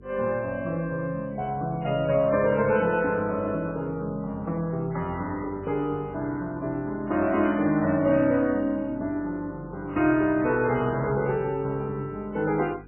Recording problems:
codec artefacts; MP3, log-spectral distance 2 dB, nothing above 2.5 kHz
hum; 50 Hz, harmonics up to 450 Hz, SNR 22 dB

